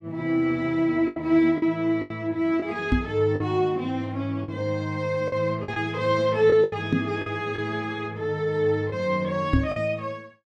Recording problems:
packet loss; 6% of the sound replaced, filled with the last packet
microphone thump; at 3 s, at 7 s and at 9.5 s; peak +7 dB vs average level

